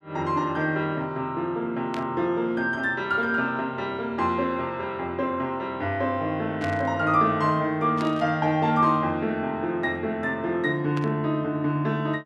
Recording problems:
burst of static; 4 times, first at 2 s; peak -8 dB vs average level

